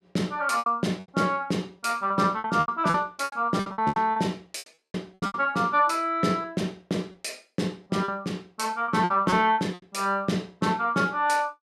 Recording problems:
lost packets; 13% of the sound replaced, filled with repeated pitch periods

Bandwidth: 15 kHz